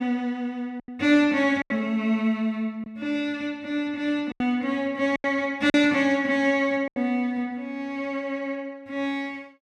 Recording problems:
lost packets; 5% of the sound replaced, filled with silence

